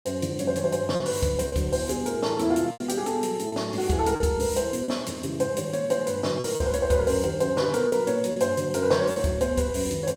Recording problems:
lost packets; 5% of the sound replaced, filled with repeated pitch periods

